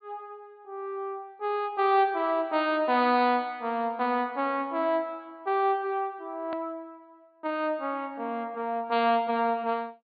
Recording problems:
treble cut off; nothing above 4.7 kHz
hard cut with a click; at 6.5 s

